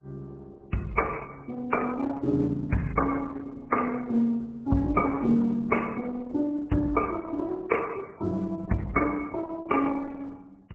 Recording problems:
lossy compression; MP3, then Opus, log-spectral distance 4 dB, nothing above 7.6 kHz

